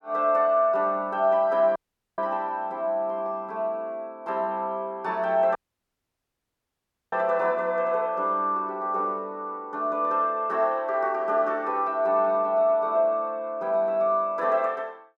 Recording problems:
audio cutting out; at 2 s and at 5.5 s for 1.5 s

